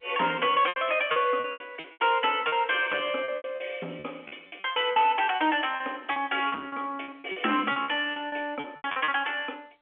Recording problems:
telephone audio; 240 Hz to 3.4 kHz, G.711
distorted audio; soft clipping, signal-to-distortion ratio 11 dB
lost packets; 15% of the sound replaced, filled with repeated pitch periods

